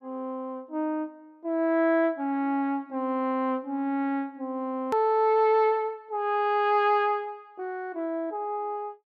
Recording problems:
edit click; at 5 s

